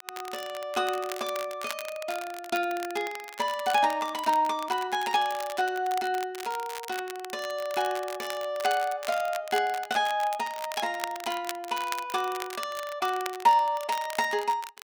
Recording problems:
crackling; vinyl, SNR 12 dB

